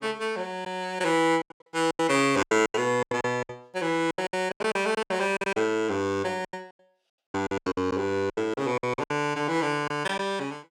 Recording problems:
packet loss; 17% of the sound replaced, filled with silence

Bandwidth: 17 kHz